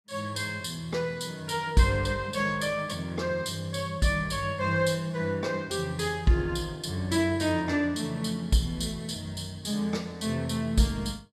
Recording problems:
none

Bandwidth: 14.5 kHz